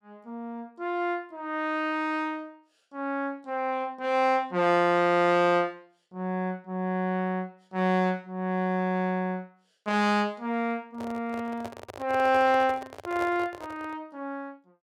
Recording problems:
microphone handling noise; from 11 to 14 s; peak -6 dB vs average level

